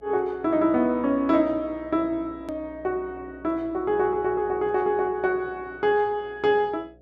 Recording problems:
mains hum; 60 Hz, harmonics up to 720 Hz, SNR 25 dB
hard cut with a click; at 2.5 s

